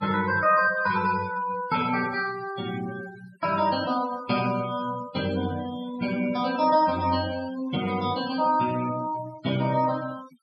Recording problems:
noise reduction artefacts; signal-to-artefact ratio 17 dB

